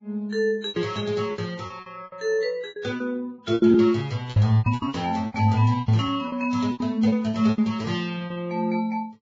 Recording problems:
lossy compression; Vorbis, log-spectral distance 2 dB, nothing above 6.2 kHz
packet loss; 16% of the sound replaced, filled with repeated pitch periods

